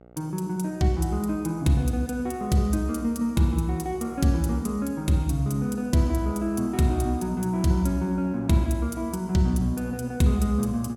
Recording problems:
electrical hum; 60 Hz, harmonics up to 1.6 kHz, SNR 26 dB

